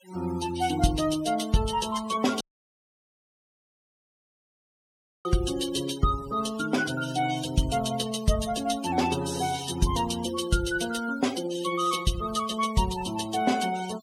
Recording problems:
denoising artefacts; signal-to-artefact ratio 14 dB
audio cutting out; at 2.5 s for 3 s

